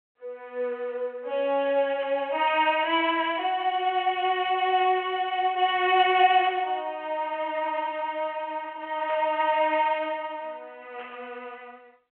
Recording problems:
phone line; 320 Hz to 3.3 kHz, G.726
static burst; 4 times, first at 2 s; peak -13 dB vs average level

